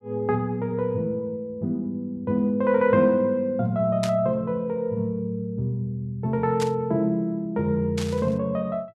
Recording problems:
static burst; at 4 s, at 6.5 s and at 8 s; peak -3 dB vs average level

